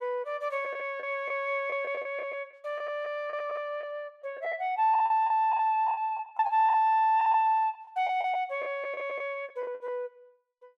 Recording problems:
packet loss; 10% of the sound replaced, filled with the last packet

